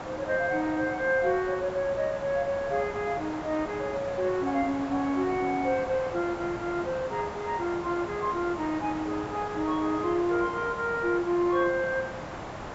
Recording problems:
treble cut off; nothing above 7.6 kHz
hiss; SNR 9 dB

